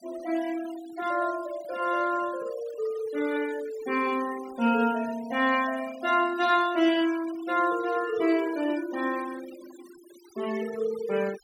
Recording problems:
noise reduction artefacts; signal-to-artefact ratio 17 dB

